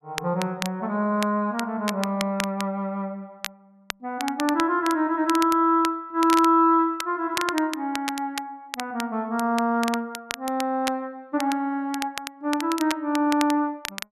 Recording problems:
crackling; vinyl, SNR 11 dB

